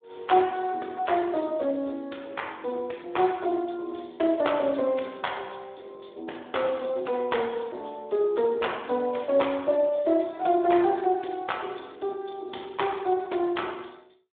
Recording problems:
telephone audio; 280 Hz to 3.6 kHz, Speex

